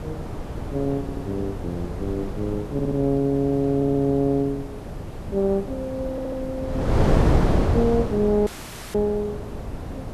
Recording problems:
hiss; slope -2 dB per octave, SNR 29 dB
wind noise; below 410 Hz, SNR 3 dB
stutter; 4 times, first at 1 s
audio cutting out; at 8.5 s

